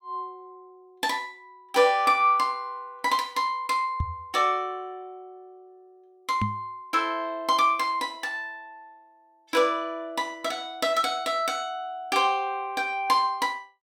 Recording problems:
microphone thump; at 4 s and at 6.5 s; peak +1 dB vs average level

